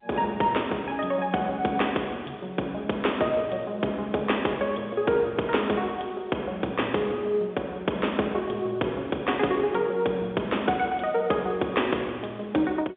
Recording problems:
telephone audio; 260 Hz to 3.6 kHz, G.711

